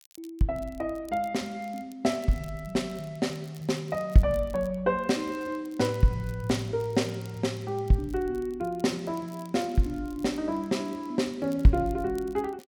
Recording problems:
crackling; vinyl, SNR 26 dB

